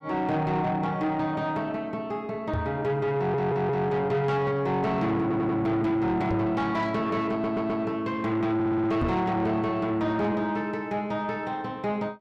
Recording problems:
distortion; soft clipping, signal-to-distortion ratio 11 dB
knock on the microphone; at 2.5 s, at 6.5 s and at 9 s; peak +3 dB vs average level
audio stuttering; 4 times, first at 3 s

